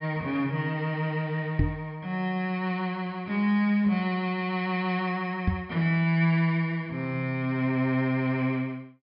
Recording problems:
low-pass filter; nothing above 5.5 kHz
knock on the microphone; at 1.5 s and at 5.5 s; peak +5 dB vs average level

